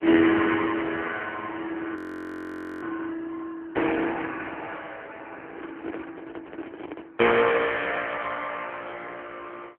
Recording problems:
telephone audio; 260 Hz to 3.2 kHz, AMR-NB
frozen audio; at 2 s for 1 s
handling noise; from 5.5 to 7 s; peak -3 dB vs average level

